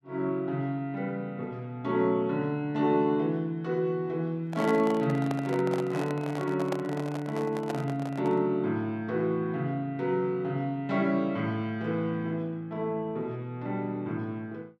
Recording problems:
microphone handling noise; from 4.5 to 8.5 s; peak 0 dB vs average level

